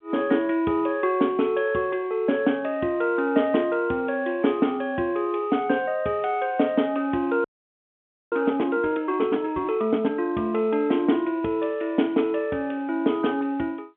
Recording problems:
phone line; 150 Hz to 3.5 kHz, G.711
audio freezing; at 7.5 s for 1 s

